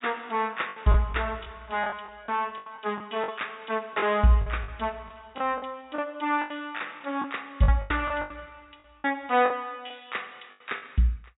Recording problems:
low-pass filter; nothing above 4 kHz
packet loss; 11% of the sound replaced, filled with the last packet

